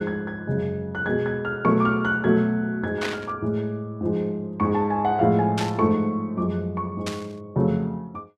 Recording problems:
static burst; at 3 s, at 5.5 s and at 7 s; peak -1 dB vs average level

